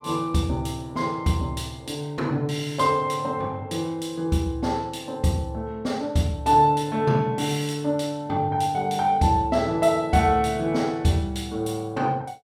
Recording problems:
none

